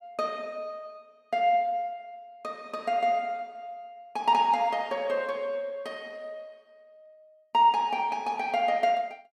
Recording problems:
none

